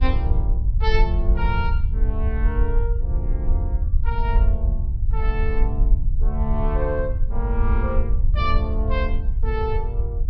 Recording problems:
treble missing; nothing above 5.5 kHz
low-frequency rumble; below 62 Hz, SNR -6 dB

